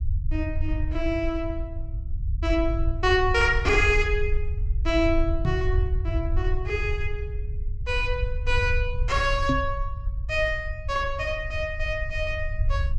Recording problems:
rumble; below 74 Hz, SNR 3 dB
knock on the microphone; at 5.5 s and at 9.5 s; peak +5 dB vs average level

